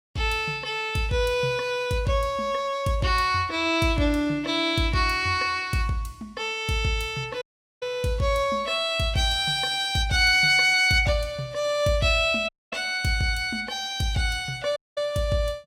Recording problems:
audio cutting out; at 7.5 s, at 12 s and at 15 s

